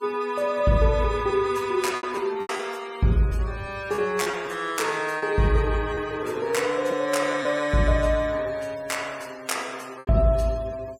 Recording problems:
noise reduction artefacts; signal-to-artefact ratio 22 dB
lost packets; 4% of the sound replaced, filled with repeated pitch periods

